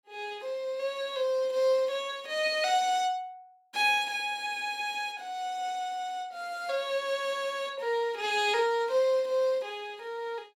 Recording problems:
none

